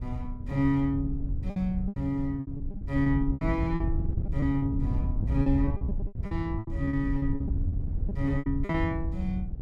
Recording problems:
wind on the microphone; below 100 Hz, SNR 2 dB
lost packets; 14% of the sound replaced, filled with repeated pitch periods

